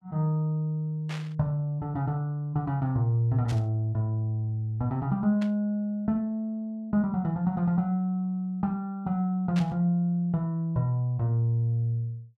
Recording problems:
burst of static; 4 times, first at 1 s; peak -7 dB vs average level

